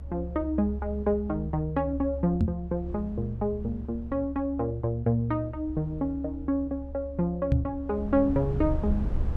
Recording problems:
rumble; below 76 Hz, strongest tone 70 Hz, SNR 8 dB
microphone bump; at 2.5 s and at 7.5 s; peak +8 dB vs average level

